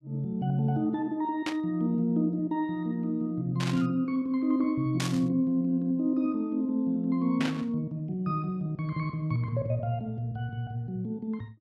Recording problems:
static burst; 4 times, first at 1.5 s; peak 0 dB vs average level

